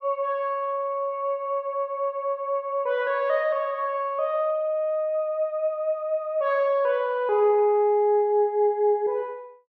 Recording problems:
none

